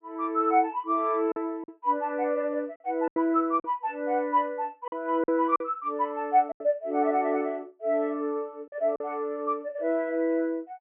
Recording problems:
treble missing; nothing above 3.3 kHz
packet loss; 5% of the sound replaced, filled with silence

